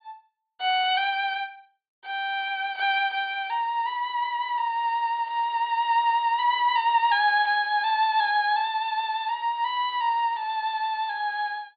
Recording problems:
treble cut off; nothing above 4.6 kHz

